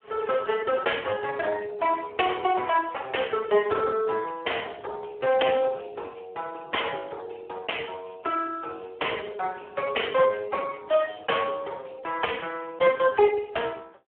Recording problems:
phone line; 340 Hz to 3.2 kHz, Speex

